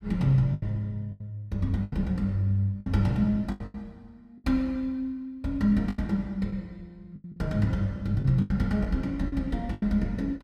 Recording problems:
lost packets; 9% of the sound replaced, filled with the last packet

